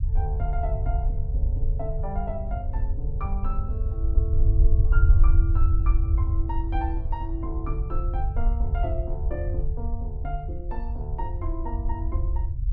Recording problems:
rumble; below 72 Hz, SNR -9 dB

